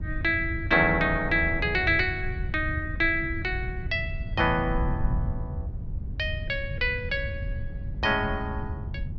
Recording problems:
wind on the microphone; below 110 Hz, SNR 7 dB

